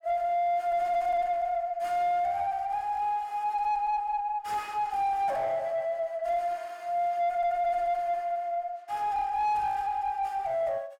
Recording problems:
distortion; soft clipping, signal-to-distortion ratio 10 dB

